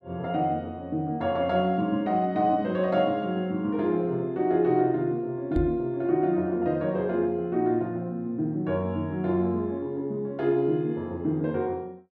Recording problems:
microphone bump; at 5.5 s; peak +2 dB vs average level

